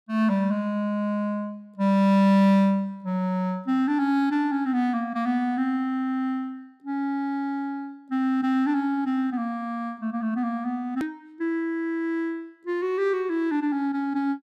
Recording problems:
hard cut with a click; at 11 s

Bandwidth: 15 kHz